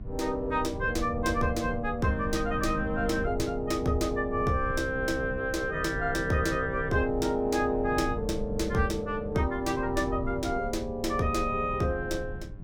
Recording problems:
hum; 50 Hz, harmonics up to 1.8 kHz, SNR 24 dB
low-frequency rumble; below 120 Hz, SNR 10 dB

